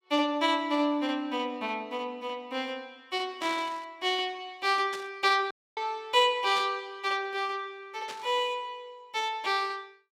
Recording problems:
static burst; 4 times, first at 3.5 s; peak -6 dB vs average level
dropout; at 5.5 s

